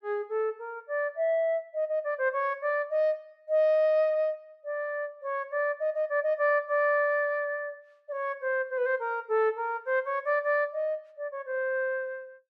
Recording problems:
none

